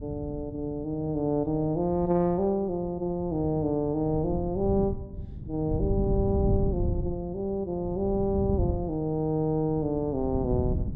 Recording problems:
wind on the microphone; below 150 Hz, SNR 6 dB

